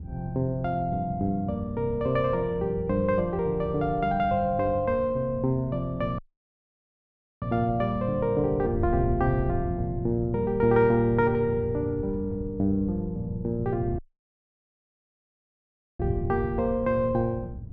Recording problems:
wind on the microphone; below 130 Hz, SNR 11 dB
dropout; at 6 s for 1 s and at 14 s for 2 s

